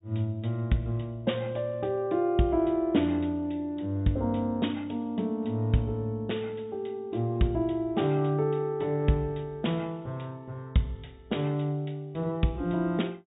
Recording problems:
treble missing; nothing above 4 kHz

